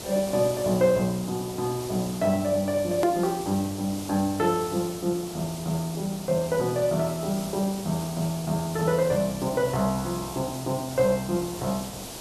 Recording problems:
hiss; SNR 11 dB
click at an edit; at 3 s

